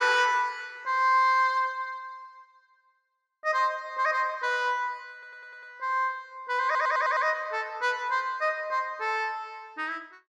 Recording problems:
audio stuttering; at 5 s and at 6.5 s

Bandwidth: 12.5 kHz